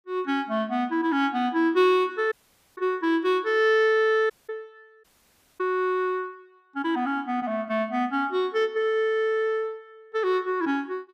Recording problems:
dropout; at 2.5 s, at 4.5 s and at 5 s for 0.5 s

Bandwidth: 15 kHz